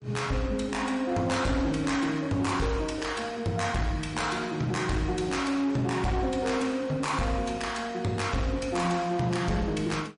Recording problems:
lossy compression; MP3, log-spectral distance 3 dB, nothing above 10.4 kHz
distortion; hard clipping, signal-to-distortion ratio 11 dB

